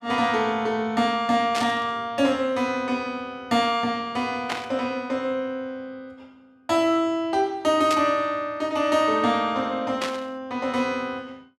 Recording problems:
burst of static; 4 times, first at 1.5 s; peak -1 dB vs average level

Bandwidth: 14 kHz